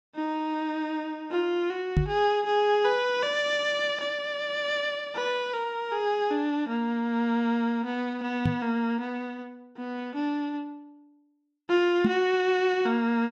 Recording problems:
microphone bump; at 2 s, at 8.5 s and at 12 s; peak +7 dB vs average level

